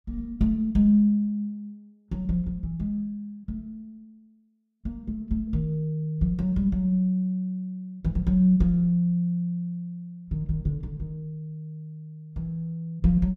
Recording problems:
none

